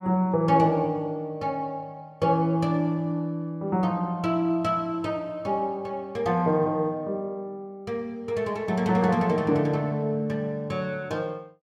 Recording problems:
none

